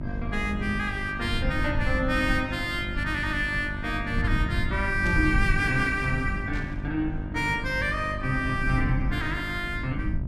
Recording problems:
hum; 50 Hz, harmonics up to 1.3 kHz, SNR 10 dB
rumble; below 120 Hz, SNR 5 dB
burst of static; at 5 s and at 6.5 s; peak -10 dB vs average level

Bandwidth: 13 kHz